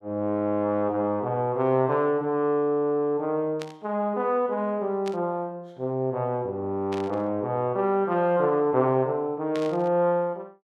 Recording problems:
burst of static; 4 times, first at 3.5 s; peak -9 dB vs average level

